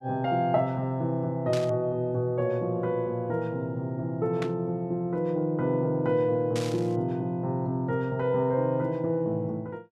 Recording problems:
burst of static; at 1.5 s, at 4.5 s and at 6.5 s; peak -5 dB vs average level

